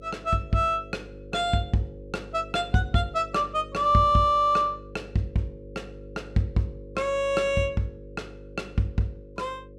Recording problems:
electrical hum; 50 Hz, harmonics up to 550 Hz, SNR 18 dB

